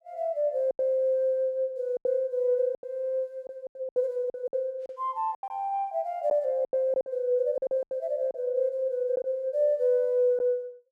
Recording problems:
lost packets; 10% of the sound replaced, filled with silence

